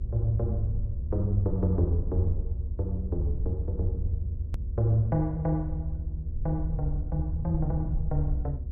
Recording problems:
low-pass filter; nothing above 8 kHz
hum; 60 Hz, harmonics up to 600 Hz, SNR 23 dB
low-frequency rumble; below 78 Hz, SNR 2 dB
click at an edit; at 4.5 s

